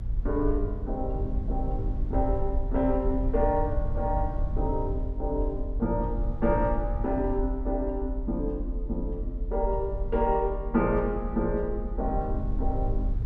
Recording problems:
rumble; below 56 Hz, strongest tone 38 Hz, SNR 3 dB

